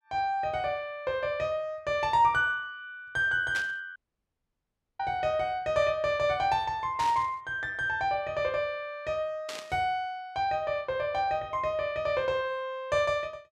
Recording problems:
burst of static; at 3.5 s, at 7 s and at 9.5 s; peak -4 dB vs average level
dropout; at 4 s for 1 s

